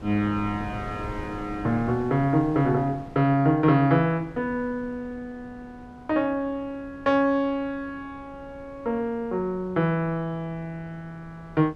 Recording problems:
wind noise; below 420 Hz, SNR 18 dB

